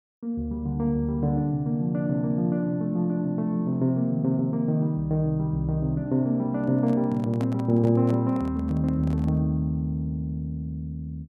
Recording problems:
microphone handling noise; from 6.5 to 9.5 s; peak -8 dB vs average level

